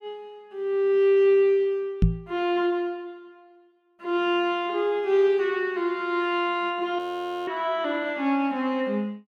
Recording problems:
microphone bump; at 2 s; peak +7 dB vs average level
audio freezing; at 7 s

